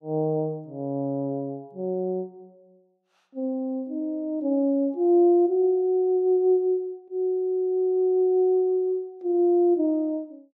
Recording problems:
none

